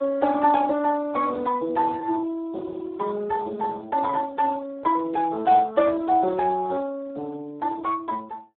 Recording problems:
telephone audio; 260 Hz to 2 kHz, Speex

